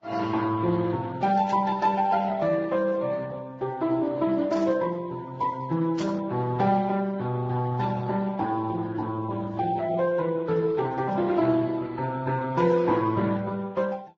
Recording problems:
codec artefacts; Speex, then Vorbis, log-spectral distance 3 dB
static burst; at 1.5 s, at 4.5 s and at 6 s; peak -9 dB vs average level

